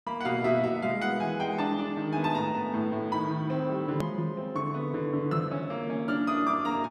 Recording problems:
click at an edit; at 4 s

